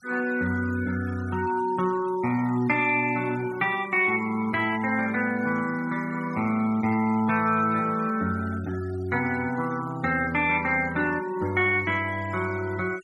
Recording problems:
denoising artefacts; signal-to-artefact ratio 20 dB

